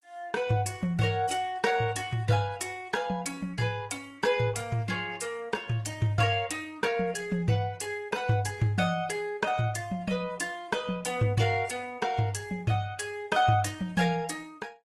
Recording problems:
lossy codec; AAC, then Opus, log-spectral distance 3 dB, nothing above 15.5 kHz

